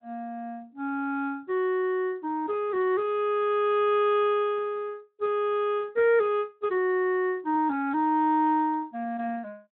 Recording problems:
phone line; 240 Hz to 3.7 kHz, Speex

